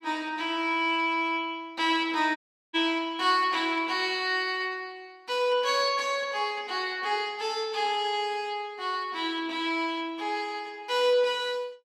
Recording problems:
dropout; at 2.5 s

